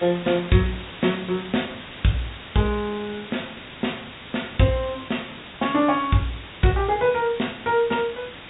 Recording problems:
treble missing; nothing above 4 kHz
background hiss; SNR 14 dB

